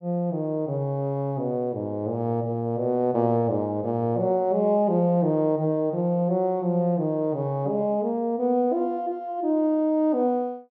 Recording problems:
none

